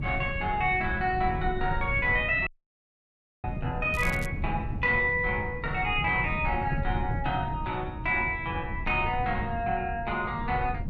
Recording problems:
wind on the microphone; below 150 Hz, SNR 8 dB
audio cutting out; at 2.5 s for 1 s
crackle; at 4 s; loose cable, SNR 18 dB

